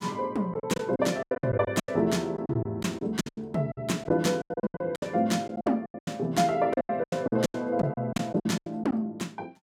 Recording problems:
packet loss; 18% of the sound replaced, filled with silence

